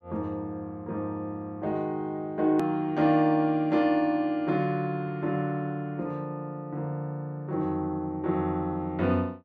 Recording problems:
hard cut with a click; at 2.5 s

